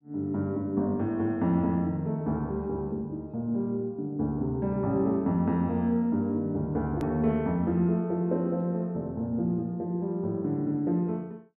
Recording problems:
click at an edit; at 7 s

